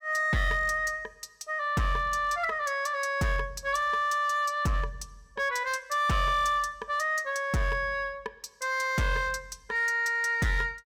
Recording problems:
distorted audio; hard clipping, signal-to-distortion ratio 12 dB

